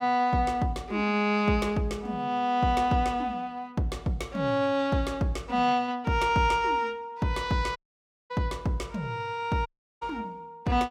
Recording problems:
dropout; at 8 s for 0.5 s and at 9.5 s

